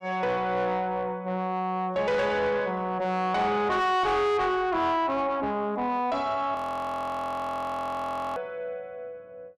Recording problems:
distortion; soft clipping, signal-to-distortion ratio 8 dB
audio freezing; at 6.5 s for 2 s

